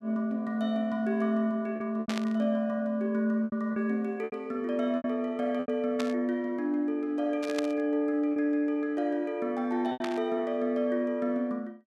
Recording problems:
lost packets; 5% of the sound replaced, filled with repeated pitch periods
static burst; 4 times, first at 2 s; peak -3 dB vs average level

